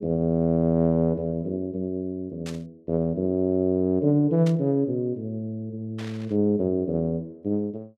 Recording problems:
burst of static; at 2.5 s, at 4.5 s and at 6 s; peak -10 dB vs average level

